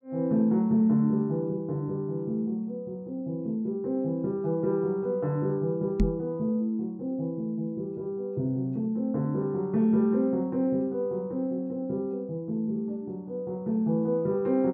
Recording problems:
microphone thump; at 6 s; peak +7 dB vs average level

